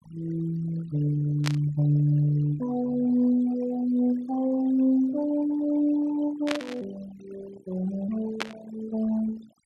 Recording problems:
denoising artefacts; signal-to-artefact ratio 21 dB
burst of static; at 1.5 s, at 6.5 s and at 8.5 s; peak +1 dB vs average level

